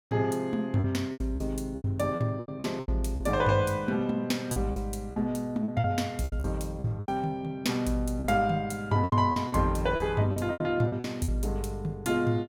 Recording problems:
lost packets; 12% of the sound replaced, filled with repeated pitch periods

